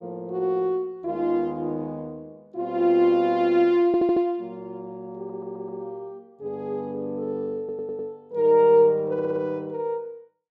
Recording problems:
stutter; 4 times, first at 4 s

